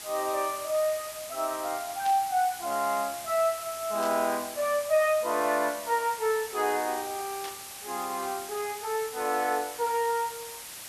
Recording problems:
hiss; slope +1 dB per octave, SNR 10 dB
burst of static; at 2 s, at 4 s and at 7.5 s; peak -8 dB vs average level

